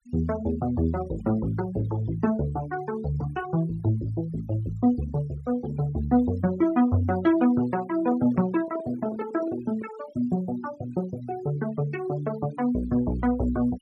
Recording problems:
noise reduction artefacts; signal-to-artefact ratio 19 dB
handling noise; from 8 to 10 s; peak -9 dB vs average level

